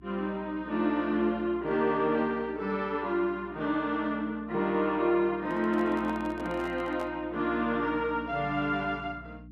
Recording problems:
electrical hum; 60 Hz, harmonics up to 300 Hz, SNR 21 dB
handling noise; from 5.5 to 7 s; peak -8 dB vs average level

